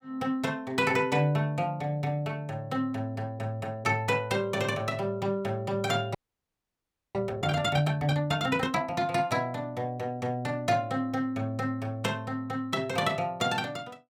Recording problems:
frozen audio; at 6 s for 1 s

